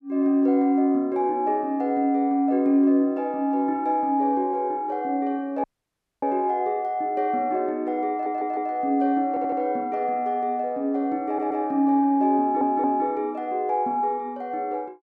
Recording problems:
audio cutting out; at 5.5 s for 0.5 s
audio stuttering; 4 times, first at 8 s

